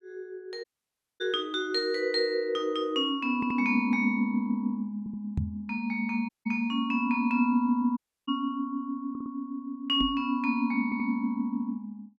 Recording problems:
audio cutting out; at 0.5 s for 0.5 s, at 6.5 s and at 8 s
audio stuttering; 4 times, first at 3.5 s
knock on the microphone; at 5.5 s and at 10 s; peak +3 dB vs average level

